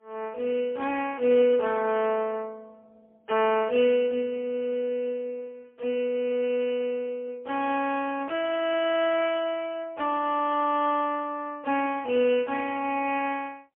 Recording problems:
telephone audio; 240 Hz to 3.3 kHz, AMR-NB, then MP3

